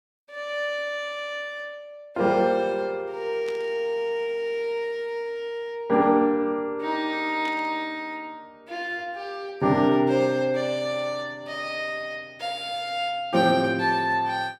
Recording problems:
static burst; at 3.5 s and at 7.5 s; peak -12 dB vs average level

